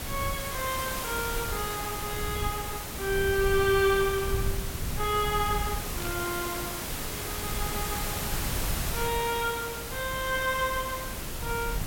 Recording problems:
hum; 50 Hz, harmonics up to 600 Hz, SNR 18 dB
background hiss; slope -2 dB per octave, SNR 4 dB
rumble; below 110 Hz, SNR 8 dB
static burst; at 6 s; peak -8 dB vs average level

